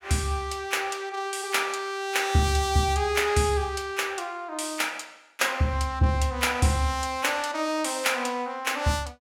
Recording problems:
none

